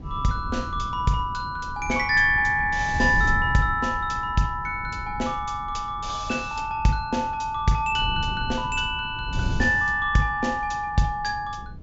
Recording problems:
treble missing; nothing above 8 kHz
wind on the microphone; below 120 Hz, SNR 11 dB

